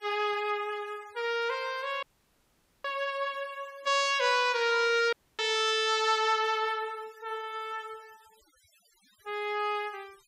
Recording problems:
denoising artefacts; signal-to-artefact ratio 26 dB
audio cutting out; at 2 s for 1 s and at 5 s

